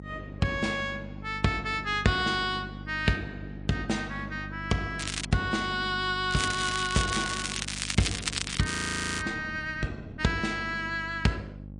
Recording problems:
codec artefacts; MP3, log-spectral distance 4 dB, nothing above 16.6 kHz
mains hum; 50 Hz, harmonics up to 600 Hz, SNR 12 dB
crackling; at 5 s and from 6.5 to 9 s; loose cable, SNR 3 dB
audio freezing; at 8.5 s

